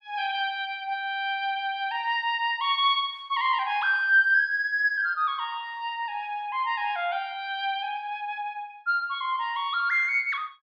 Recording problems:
none

